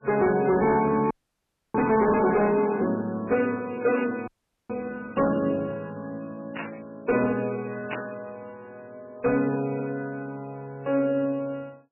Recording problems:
codec artefacts; MP3, log-spectral distance 3 dB, nothing above 2.5 kHz
distorted audio; hard clipping, signal-to-distortion ratio 12 dB
audio freezing; at 1 s for 0.5 s and at 4.5 s
burst of static; at 4 s, at 6.5 s and at 8 s; peak -2 dB vs average level

